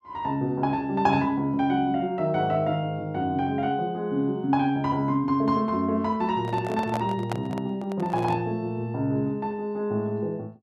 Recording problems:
handling noise; from 6.5 to 8.5 s; peak -1 dB vs average level

